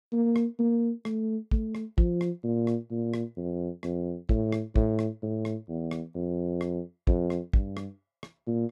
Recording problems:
none

